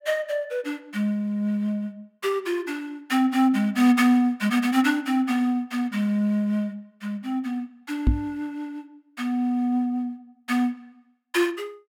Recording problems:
microphone thump; at 8 s; peak +7 dB vs average level

